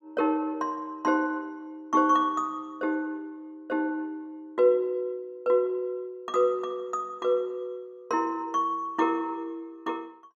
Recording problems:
none

